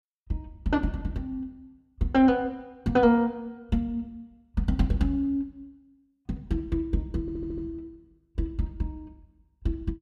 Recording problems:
stutter; at 7 s

